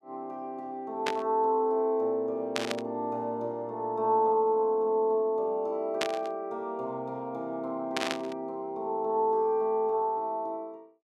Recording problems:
burst of static; 4 times, first at 1 s; peak +4 dB vs average level

